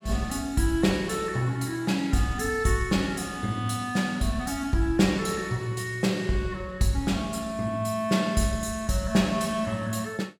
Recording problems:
none

